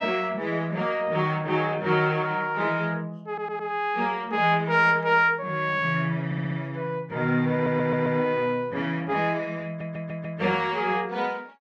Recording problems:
audio stuttering; 4 times, first at 3.5 s

